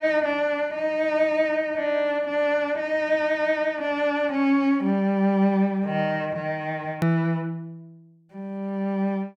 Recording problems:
edit click; at 7 s

